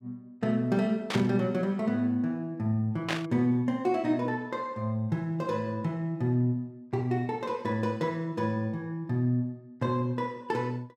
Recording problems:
static burst; at 1 s and at 3 s; peak +2 dB vs average level

